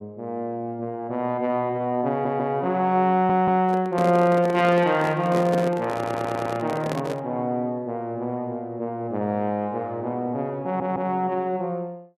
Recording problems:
audio stuttering; 4 times, first at 2 s
handling noise; from 3.5 to 7 s; peak -1 dB vs average level

